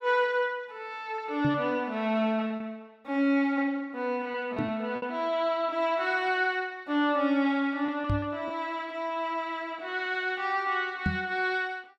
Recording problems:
packet loss; 3% of the sound replaced, filled with repeated pitch periods
knock on the microphone; 4 times, first at 1.5 s; peak +4 dB vs average level

